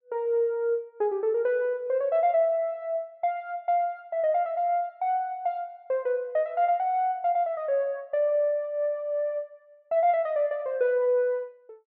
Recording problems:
none

